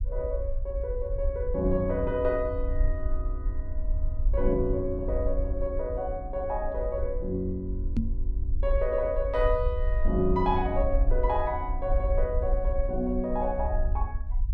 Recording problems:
low-frequency rumble; below 54 Hz, SNR 3 dB
knock on the microphone; at 8 s; peak +6 dB vs average level

